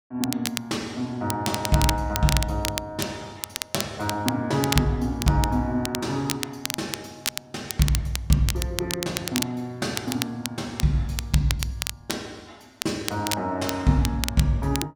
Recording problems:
crackle; vinyl, SNR 5 dB

